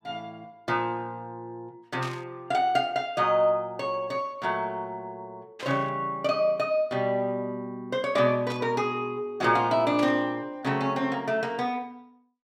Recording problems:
static burst; 4 times, first at 2 s; peak -6 dB vs average level

